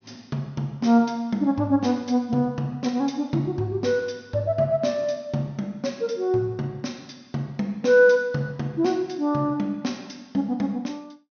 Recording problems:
treble missing; nothing above 6.2 kHz

